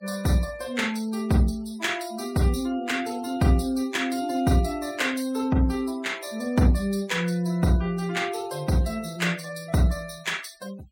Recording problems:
denoising artefacts; signal-to-artefact ratio 21 dB

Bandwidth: 16.5 kHz